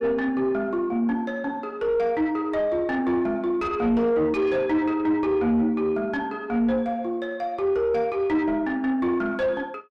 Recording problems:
distorted audio; soft clipping, signal-to-distortion ratio 11 dB

